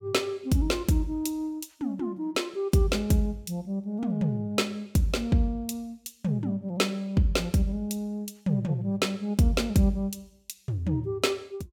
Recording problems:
none

